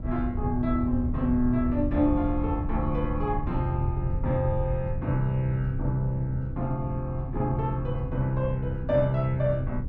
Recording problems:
wind noise; below 110 Hz, SNR 5 dB

